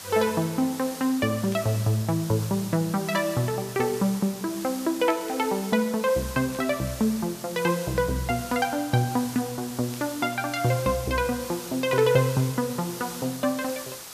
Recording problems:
background hiss; slope -1 dB per octave, SNR 12 dB
static burst; 5 times, first at 1.5 s; peak -12 dB vs average level

